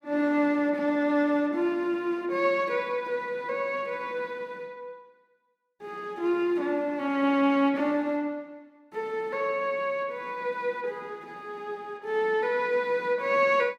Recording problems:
none

